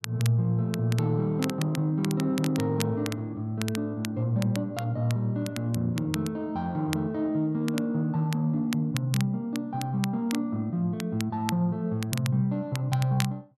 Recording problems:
crackling; vinyl, SNR 13 dB

